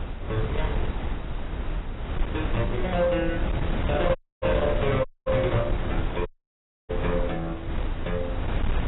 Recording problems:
lossy codec; AAC, log-spectral distance 3 dB, nothing above 3.8 kHz
distortion; hard clipping, uneven, signal-to-distortion ratio 12 dB
hiss; SNR 27 dB
wind on the microphone; below 190 Hz, SNR 3 dB
audio cutting out; at 4 s, at 5 s and at 6.5 s for 0.5 s

